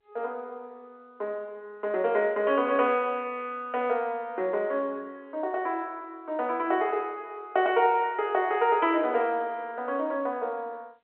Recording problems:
phone line; 300 Hz to 3.3 kHz, G.711

